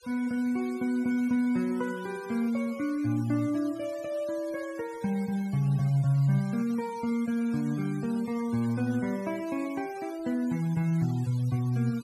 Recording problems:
denoising artefacts; signal-to-artefact ratio 22 dB

